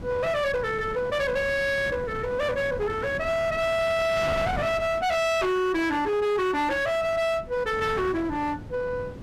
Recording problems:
distorted audio; hard clipping, uneven, signal-to-distortion ratio 6 dB
wind on the microphone; below 610 Hz, SNR 13 dB

